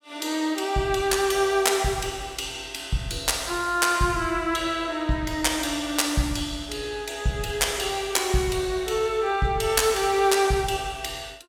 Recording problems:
none

